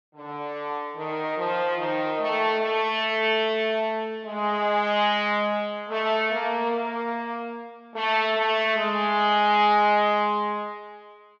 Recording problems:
none

